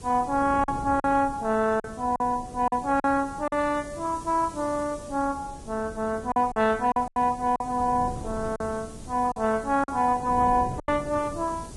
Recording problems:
lossy codec; Vorbis, log-spectral distance 5 dB
hiss; slope +2 dB per octave, SNR 23 dB
wind on the microphone; below 340 Hz, SNR 16 dB
lost packets; 6% of the sound replaced, filled with silence

